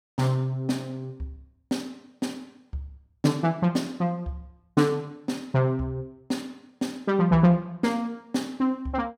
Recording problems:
none

